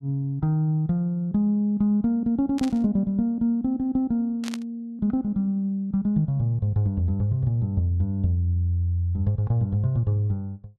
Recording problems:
burst of static; at 2.5 s and at 4.5 s; peak -7 dB vs average level

